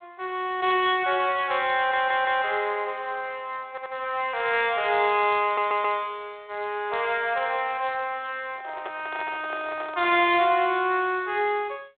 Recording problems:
phone line; 320 Hz to 3.6 kHz, G.726
audio stuttering; at 2 s, at 3.5 s and at 5.5 s
microphone handling noise; from 8.5 to 11 s; peak -7 dB vs average level

